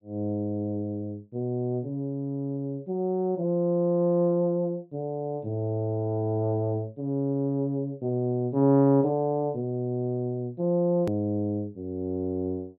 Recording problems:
treble cut off; nothing above 4 kHz
click at an edit; at 11 s

